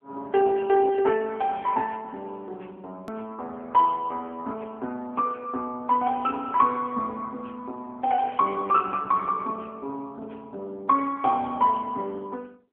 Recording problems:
telephone audio; 220 Hz to 3.3 kHz, AMR-NB
click at an edit; at 3 s

